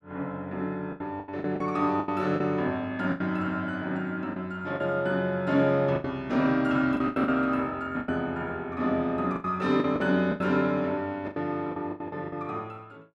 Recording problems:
lost packets; 10% of the sound replaced, filled with the last packet

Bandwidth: 12.5 kHz